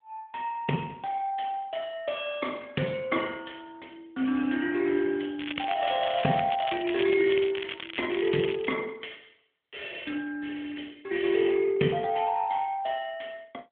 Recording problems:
telephone audio; 110 Hz to 3.4 kHz, AMR-NB
crackle; from 5.5 to 9 s; loose cable, SNR 9 dB

